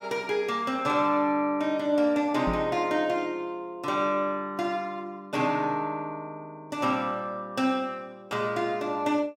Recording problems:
knock on the microphone; at 2.5 s; peak -1 dB vs average level

